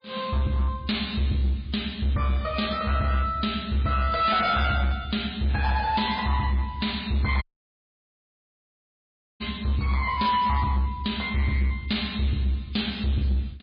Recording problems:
codec artefacts; MP3, log-spectral distance 3 dB, nothing above 4.4 kHz
distortion; hard clipping, signal-to-distortion ratio 12 dB
dropout; at 7.5 s for 2 s

